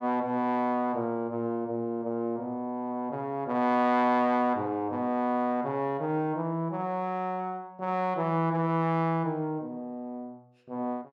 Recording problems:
none

